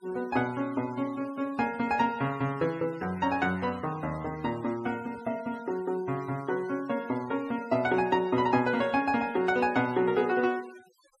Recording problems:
noise reduction artefacts; signal-to-artefact ratio 21 dB

